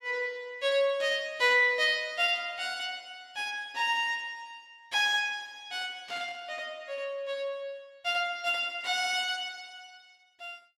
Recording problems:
static burst; at 1 s and at 6 s; peak -13 dB vs average level

